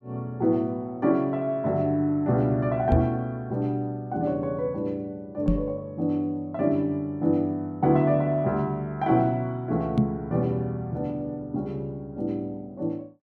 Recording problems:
microphone thump; at 3 s, at 5.5 s and at 10 s; peak +7 dB vs average level

